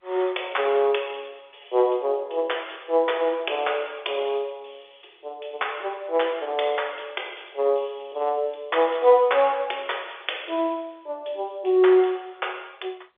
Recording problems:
phone line; 320 Hz to 3.6 kHz, G.711

